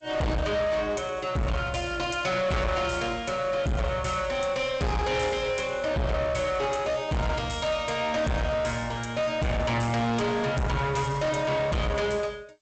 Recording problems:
lossy codec; G.722, log-spectral distance 3 dB, nothing above 7.8 kHz
distortion; hard clipping, uneven, signal-to-distortion ratio 5 dB

